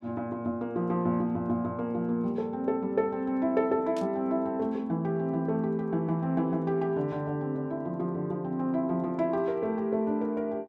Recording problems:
static burst; at 4 s; peak -12 dB vs average level

